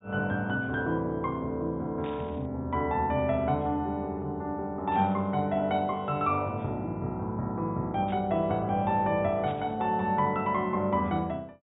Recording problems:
treble cut off; nothing above 4 kHz
static burst; 4 times, first at 2 s; peak -14 dB vs average level

